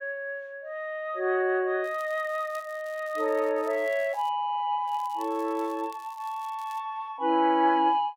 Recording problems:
crackling; from 2 to 4.5 s and from 5 to 7 s; loose cable, SNR 26 dB

